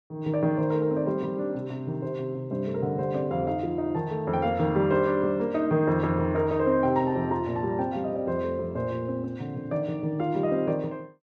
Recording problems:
none

